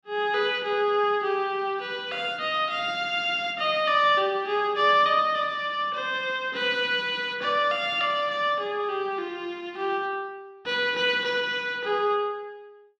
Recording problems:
none

